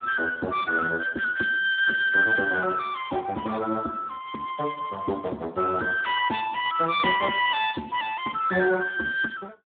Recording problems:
telephone audio; 260 Hz to 3.9 kHz, Speex

